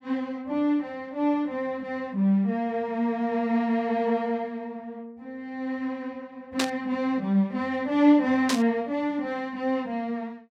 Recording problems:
static burst; at 6.5 s and at 8.5 s; peak +4 dB vs average level

